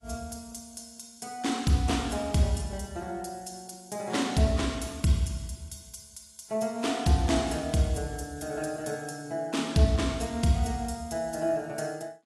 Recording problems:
codec artefacts; AAC, log-spectral distance 5 dB, nothing above 11.3 kHz

